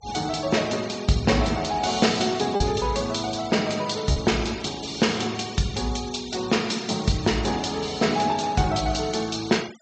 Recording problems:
low-pass filter; nothing above 8 kHz
noise reduction artefacts; signal-to-artefact ratio 17 dB
lost packets; 0.8% of the sound replaced, filled with repeated pitch periods

